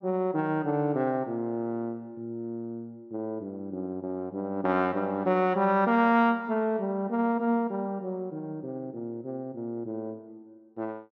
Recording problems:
none

